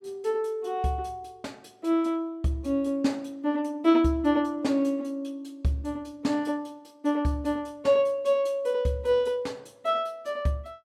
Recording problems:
none

